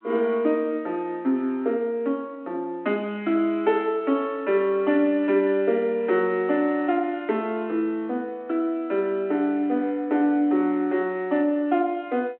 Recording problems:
phone line; 220 Hz to 3.3 kHz, G.726

